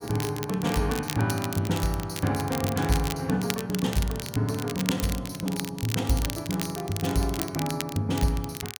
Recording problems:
crackle; vinyl, SNR 8 dB

